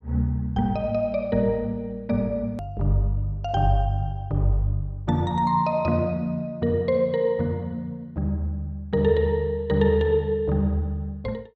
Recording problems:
click at an edit; at 2.5 s

